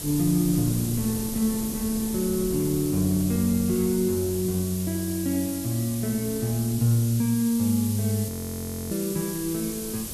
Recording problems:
hiss; slope +2 dB per octave, SNR 8 dB
wind noise; below 320 Hz, SNR 15 dB
audio freezing; at 8.5 s for 0.5 s

